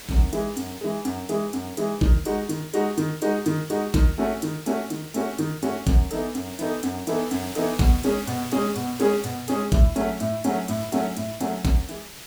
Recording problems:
hiss; slope -1 dB per octave, SNR 14 dB

